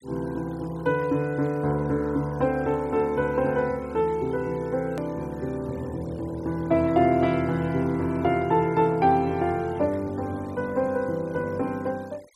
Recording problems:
denoising artefacts; signal-to-artefact ratio 27 dB
edit click; at 5 s

